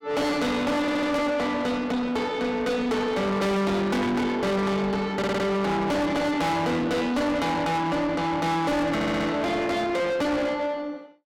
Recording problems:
distortion; soft clipping, signal-to-distortion ratio 6 dB
stutter; at 1 s, at 5 s and at 9 s

